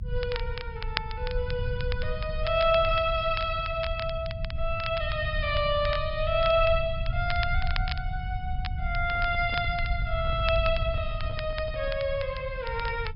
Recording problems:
treble cut off; nothing above 5.5 kHz
low-frequency rumble; below 92 Hz, SNR 6 dB
crackling; vinyl, SNR 13 dB
microphone handling noise; from 9 to 12 s; peak -9 dB vs average level

